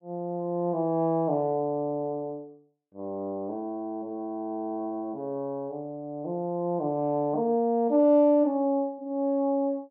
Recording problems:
none

